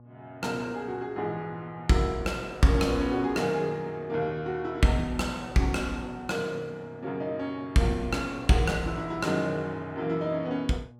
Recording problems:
electrical hum; 60 Hz, harmonics up to 1.1 kHz, SNR 23 dB

